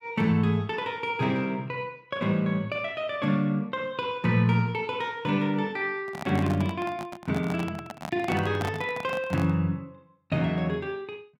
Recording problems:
handling noise; from 6 to 9.5 s; peak -1 dB vs average level

